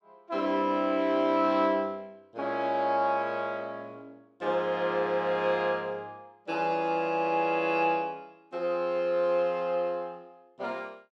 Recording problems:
none

